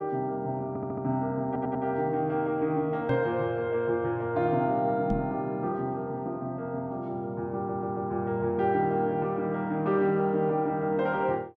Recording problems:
audio stuttering; at 0.5 s, at 1.5 s and at 7.5 s
microphone bump; at 3 s and at 5 s; peak +1 dB vs average level

